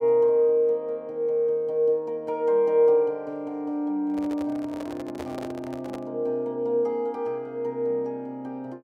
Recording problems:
handling noise; from 4 to 6 s; peak -7 dB vs average level

